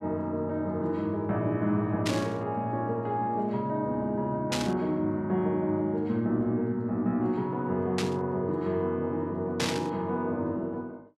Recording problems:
burst of static; 4 times, first at 2 s; peak +3 dB vs average level

